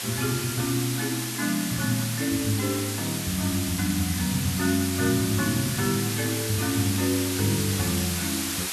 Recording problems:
background hiss; slope +2 dB per octave, SNR 3 dB

